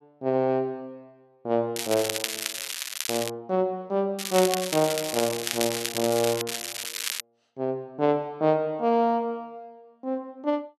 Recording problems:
crackle; from 2 to 3.5 s, from 4 to 6.5 s and at 6.5 s; loose cable, SNR 4 dB

